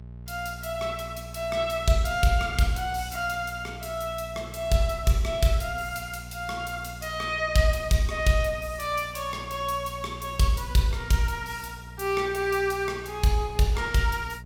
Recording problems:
hum; 60 Hz, harmonics up to 600 Hz, SNR 15 dB

